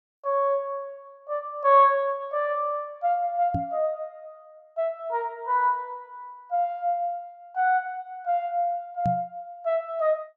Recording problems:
microphone thump; at 3.5 s and at 9 s; peak 0 dB vs average level

